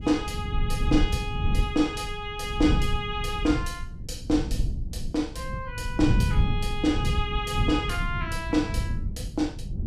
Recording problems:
rumble; below 120 Hz, SNR 2 dB

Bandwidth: 14.5 kHz